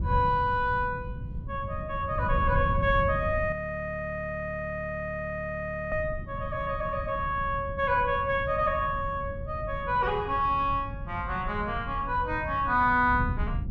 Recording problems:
wind on the microphone; below 140 Hz, SNR 8 dB
frozen audio; at 3.5 s for 2.5 s

